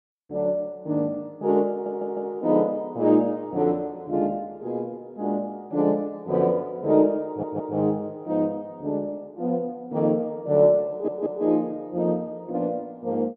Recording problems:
audio stuttering; at 1.5 s, at 7.5 s and at 11 s

